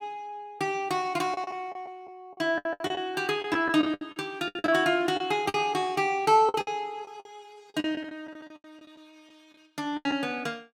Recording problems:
lost packets; 13% of the sound replaced, filled with the last packet

